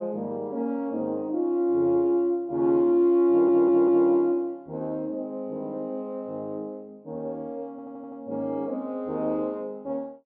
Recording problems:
audio stuttering; at 3.5 s and at 7.5 s

